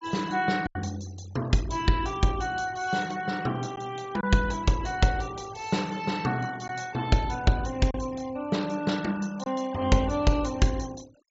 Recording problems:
low-pass filter; nothing above 8 kHz
noise reduction artefacts; signal-to-artefact ratio 20 dB
packet loss; 1.5% of the sound replaced, filled with silence

